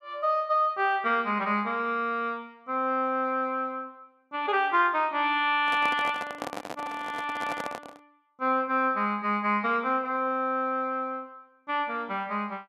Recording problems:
handling noise; from 5.5 to 8 s; peak -3 dB vs average level

